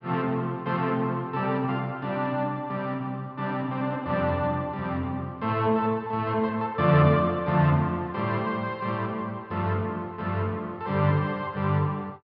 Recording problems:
low-pass filter; nothing above 5.3 kHz

